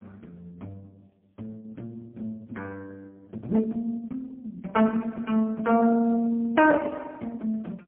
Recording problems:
phone line; 170 Hz to 2.3 kHz, AMR-NB, then MP3
distorted audio; hard clipping, signal-to-distortion ratio 17 dB

